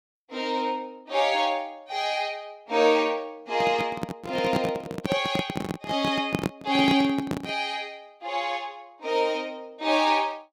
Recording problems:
microphone handling noise; from 3.5 to 7.5 s; peak +4 dB vs average level

